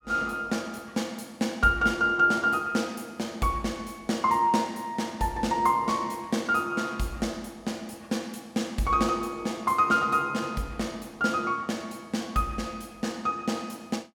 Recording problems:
none

